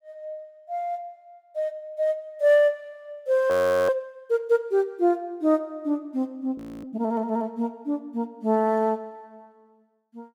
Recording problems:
audio freezing; at 3.5 s and at 6.5 s

